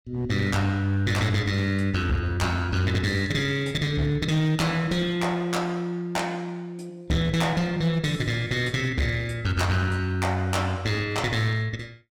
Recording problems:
distorted audio; hard clipping, uneven, signal-to-distortion ratio 11 dB

